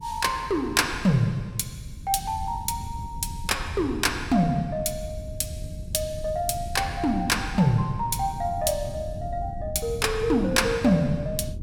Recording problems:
wind on the microphone; below 130 Hz, SNR 11 dB

